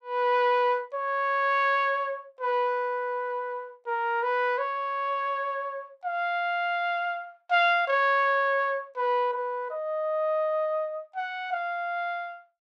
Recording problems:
none

